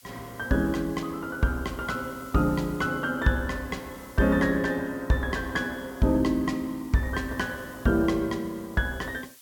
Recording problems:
background hiss; slope +3 dB per octave, SNR 23 dB

